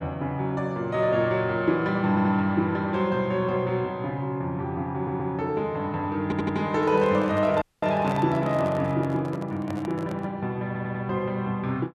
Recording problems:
audio stuttering; 4 times, first at 2 s
handling noise; from 6.5 to 10 s; peak -6 dB vs average level
audio cutting out; at 7.5 s

